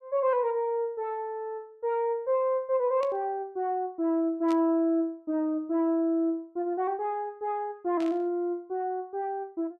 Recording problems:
static burst; at 3 s, at 4.5 s and at 8 s; peak -11 dB vs average level

